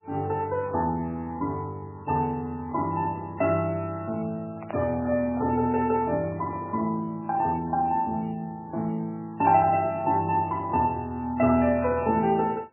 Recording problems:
lossy codec; MP3, log-spectral distance 2 dB, nothing above 2.7 kHz
microphone handling noise; from 4.5 to 7 s; peak -8 dB vs average level

